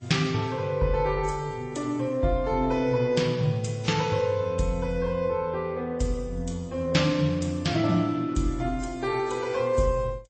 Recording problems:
codec artefacts; MP3, then AAC, log-spectral distance 2 dB, nothing above 8.2 kHz

